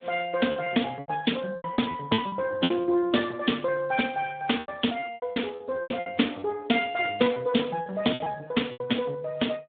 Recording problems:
phone line; 170 Hz to 3.7 kHz, Speex
packet loss; 13% of the sound replaced, filled with repeated pitch periods

